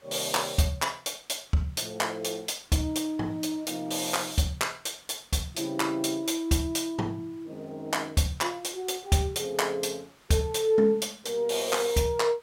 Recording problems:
hiss; SNR 29 dB

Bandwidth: 16 kHz